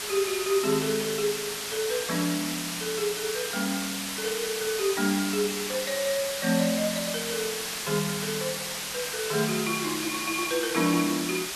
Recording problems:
hiss; slope +1 dB per octave, SNR 2 dB

